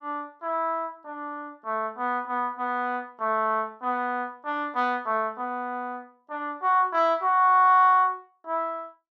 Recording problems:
none

